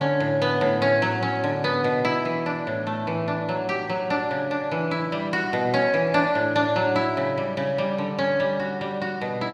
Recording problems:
none

